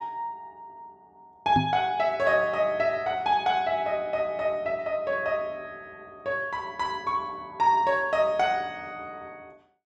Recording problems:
microphone bump; at 1.5 s; peak +4 dB vs average level

